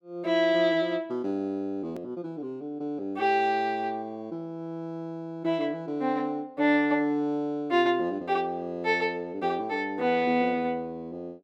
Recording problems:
click at an edit; at 2 s

